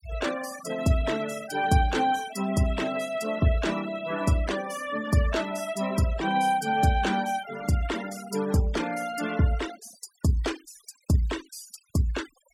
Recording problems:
denoising artefacts; signal-to-artefact ratio 15 dB

